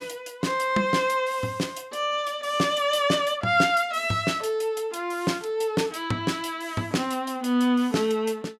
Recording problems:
none

